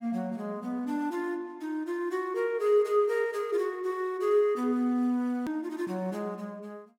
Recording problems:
hard cut with a click; at 5.5 s

